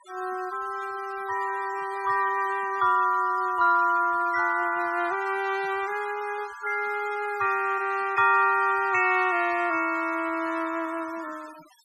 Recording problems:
denoising artefacts; signal-to-artefact ratio 21 dB

